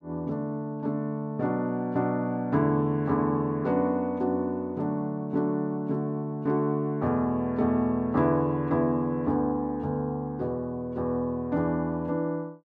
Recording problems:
none

